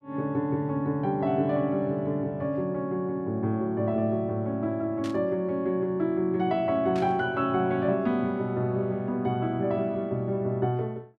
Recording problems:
burst of static; at 5 s and at 7 s; peak -10 dB vs average level

